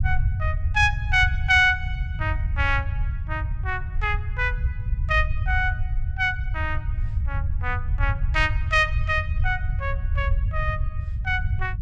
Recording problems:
low-frequency rumble; below 92 Hz, SNR 3 dB

